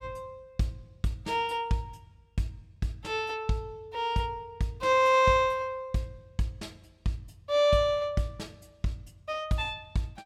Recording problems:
none

